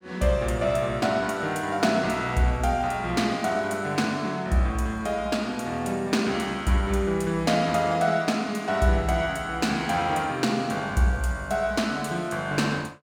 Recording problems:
none

